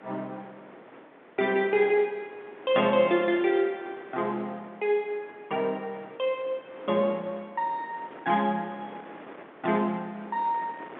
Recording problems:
phone line; 280 Hz to 3.7 kHz, G.711
wind noise; below 1.4 kHz, SNR 19 dB

